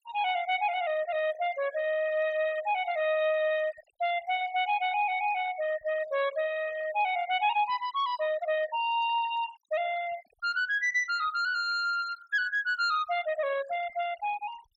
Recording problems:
denoising artefacts; signal-to-artefact ratio 17 dB

